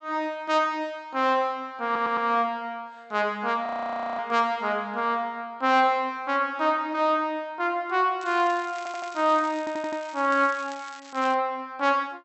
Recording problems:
treble cut off; nothing above 7.9 kHz
stutter; at 2 s, at 9 s and at 9.5 s
audio freezing; at 3.5 s for 0.5 s
crackling; from 8 to 11 s; loose cable, SNR 20 dB

